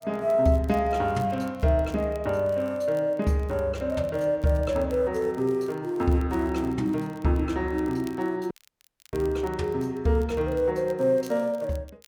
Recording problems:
crackle; vinyl, SNR 29 dB
dropout; at 8.5 s for 0.5 s

